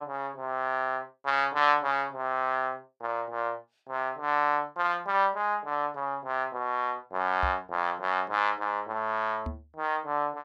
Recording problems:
microphone bump; at 7.5 s and at 9.5 s; peak -2 dB vs average level

